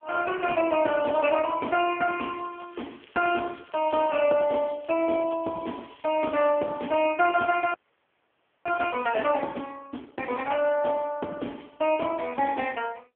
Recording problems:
phone line; 280 Hz to 3.3 kHz, AMR-NB
crackling; from 2.5 to 7 s and from 7.5 to 9 s; loose cable, SNR 27 dB
audio freezing; at 7.5 s for 1 s

